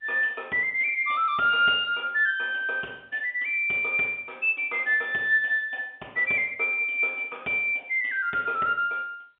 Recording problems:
phone line; 300 Hz to 3.5 kHz, G.711

